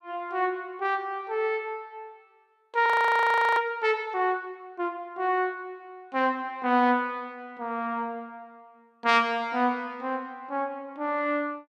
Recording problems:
audio freezing; at 3 s for 0.5 s

